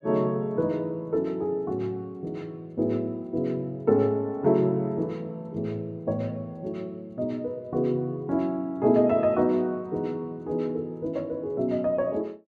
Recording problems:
none

